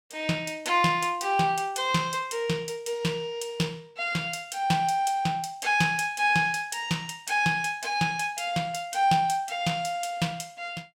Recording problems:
none

